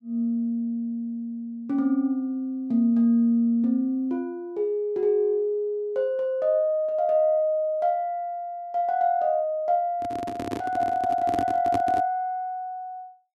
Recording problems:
microphone handling noise; from 10 to 12 s; peak -1 dB vs average level

